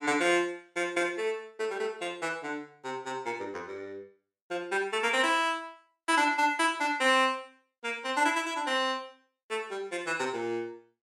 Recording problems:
none

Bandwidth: 17 kHz